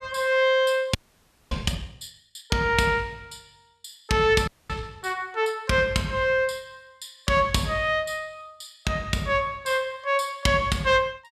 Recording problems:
audio freezing; at 1 s for 0.5 s and at 4.5 s

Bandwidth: 14 kHz